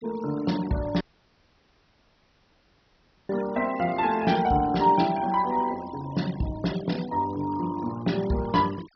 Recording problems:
treble cut off; nothing above 5.9 kHz
denoising artefacts; signal-to-artefact ratio 17 dB
dropout; at 1 s for 2.5 s

